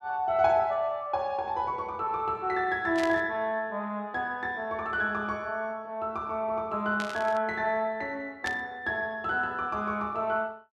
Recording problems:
static burst; at 3 s, at 7 s and at 8.5 s; peak -3 dB vs average level

